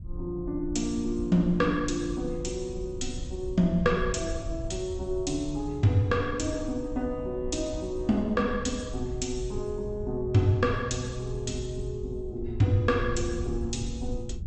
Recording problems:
lossy compression; MP2, log-spectral distance 2 dB, nothing above 8 kHz
low-frequency rumble; below 86 Hz, SNR 10 dB

